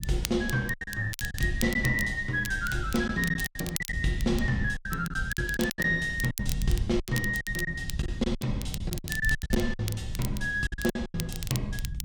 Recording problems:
rumble; below 98 Hz, SNR 8 dB
crackling; vinyl, SNR 10 dB
lost packets; 13% of the sound replaced, filled with silence

